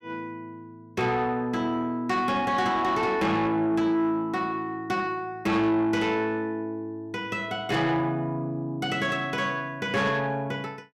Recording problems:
distorted audio; soft clipping, signal-to-distortion ratio 11 dB

